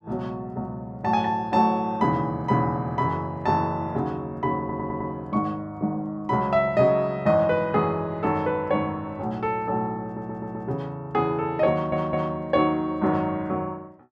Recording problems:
stutter; at 4.5 s, at 10 s and at 12 s

